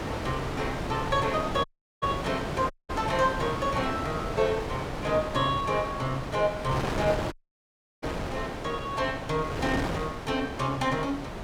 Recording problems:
wind noise; below 1.1 kHz, SNR 4 dB
audio cutting out; at 1.5 s, at 2.5 s and at 7.5 s for 0.5 s

